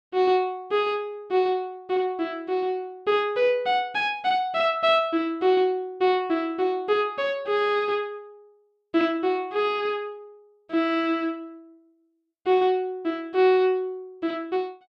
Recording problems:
none

